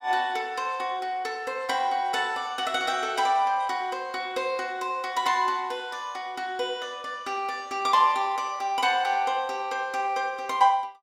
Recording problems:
none

